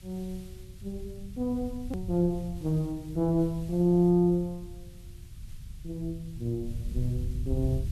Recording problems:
hiss; slope +1 dB per octave, SNR 27 dB
low-frequency rumble; below 96 Hz, SNR 11 dB
edit click; at 2 s

